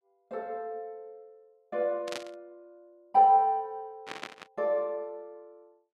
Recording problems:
burst of static; at 2 s and at 4 s; peak -5 dB vs average level

